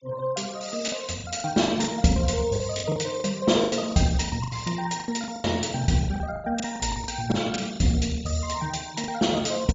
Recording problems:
treble missing; nothing above 8 kHz
denoising artefacts; signal-to-artefact ratio 21 dB
packet loss; 14% of the sound replaced, filled with the last packet

